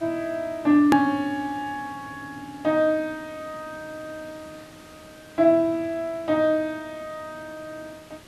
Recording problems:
hiss; slope -3 dB per octave, SNR 24 dB
hard cut with a click; at 1 s

